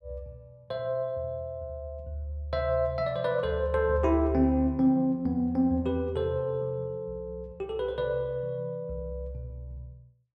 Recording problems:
none

